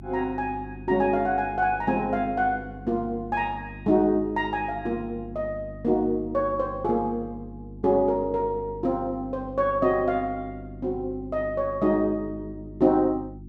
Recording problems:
mains hum; 50 Hz, harmonics up to 350 Hz, SNR 16 dB

